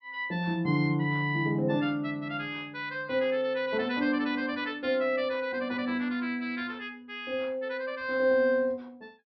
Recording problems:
treble missing; nothing above 5.5 kHz

